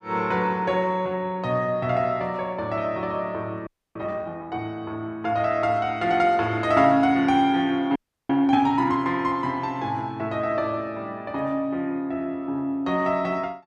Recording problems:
audio freezing; at 3.5 s and at 8 s

